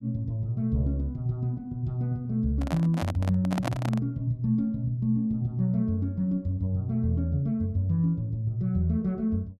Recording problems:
handling noise; from 2.5 to 4 s; peak +1 dB vs average level

